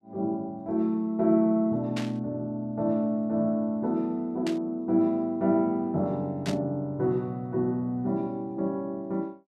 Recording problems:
static burst; at 2 s, at 4.5 s and at 6.5 s; peak -5 dB vs average level

